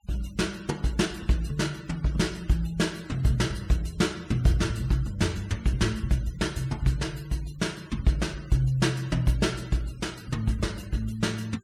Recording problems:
denoising artefacts; signal-to-artefact ratio 23 dB

